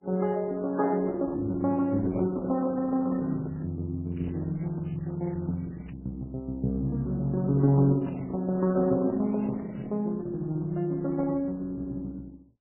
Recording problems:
lossy codec; Opus, then MP3, log-spectral distance 4 dB
crackling; from 2 to 3.5 s, from 4 to 6 s and from 8 to 10 s; loose cable, SNR 27 dB

